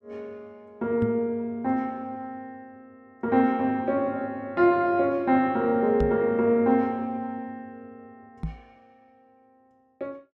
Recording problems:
knock on the microphone; at 1 s, at 6 s and at 8.5 s; peak -1 dB vs average level

